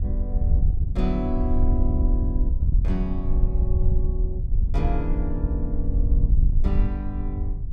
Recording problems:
wind noise; below 68 Hz, SNR -7 dB

